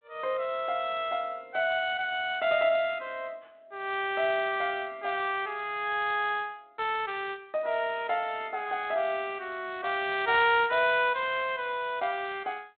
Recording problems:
phone line; 150 Hz to 3.7 kHz, G.726

